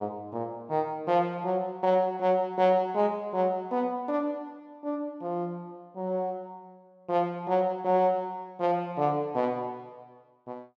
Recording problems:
none

